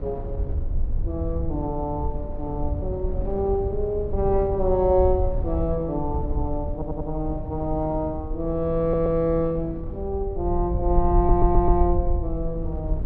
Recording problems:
rumble; below 68 Hz, SNR 5 dB
wind on the microphone; below 330 Hz, SNR 13 dB
stutter; at 6.5 s, at 9 s and at 11 s

